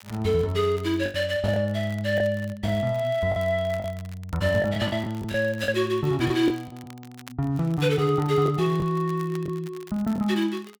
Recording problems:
crackle; vinyl, SNR 25 dB
packet loss; 6% of the sound replaced, filled with the last packet

